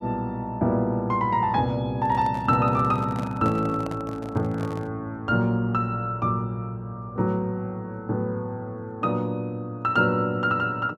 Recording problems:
handling noise; from 2 to 5 s; peak -7 dB vs average level

